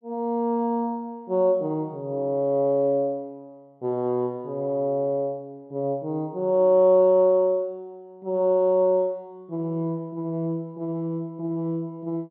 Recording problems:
none

